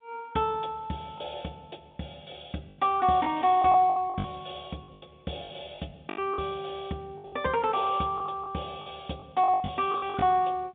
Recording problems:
phone line; 130 Hz to 3.6 kHz, G.711
lost packets; 10% of the sound replaced, filled with the last packet

